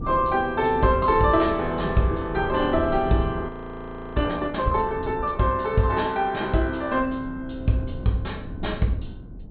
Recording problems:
low-pass filter; nothing above 4.1 kHz
wind noise; below 170 Hz, SNR 13 dB
audio freezing; at 3.5 s for 0.5 s

